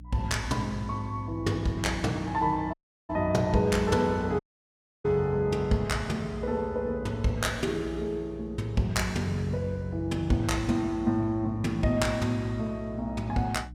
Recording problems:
electrical hum; 60 Hz, harmonics up to 300 Hz, SNR 16 dB
dropout; at 2.5 s and at 4.5 s for 0.5 s

